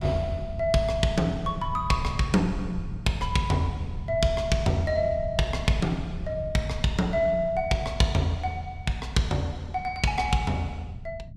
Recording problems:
low-frequency rumble; below 130 Hz, SNR 11 dB

